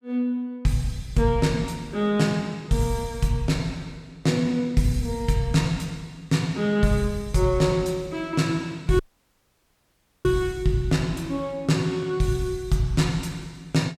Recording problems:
dropout; at 9 s for 1.5 s

